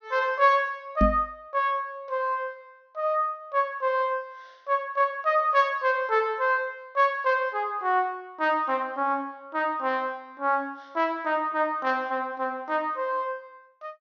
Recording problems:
treble cut off; nothing above 6.7 kHz
microphone bump; at 1 s; peak +6 dB vs average level

